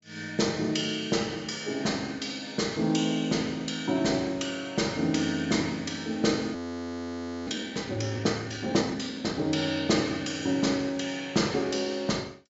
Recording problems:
treble missing; nothing above 8 kHz
frozen audio; at 6.5 s for 1 s

